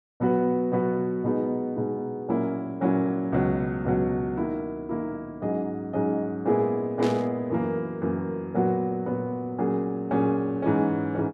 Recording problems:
static burst; at 7 s; peak -7 dB vs average level

